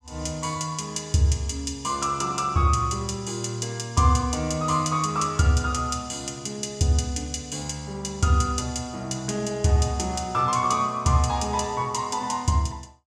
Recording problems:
none

